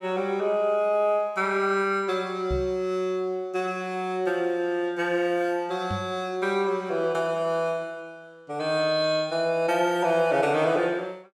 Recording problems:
microphone bump; at 2.5 s and at 6 s; peak -3 dB vs average level

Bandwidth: 15.5 kHz